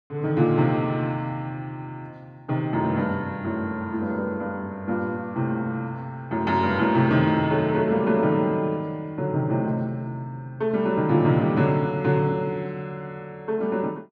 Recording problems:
none

